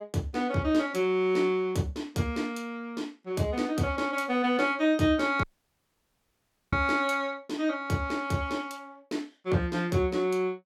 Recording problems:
dropout; at 5.5 s for 1.5 s

